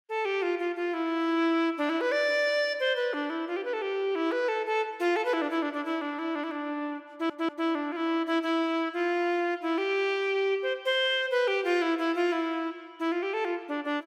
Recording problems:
audio stuttering; at 7 s

